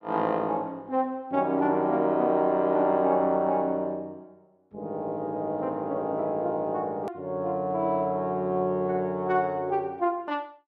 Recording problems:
edit click; at 7 s

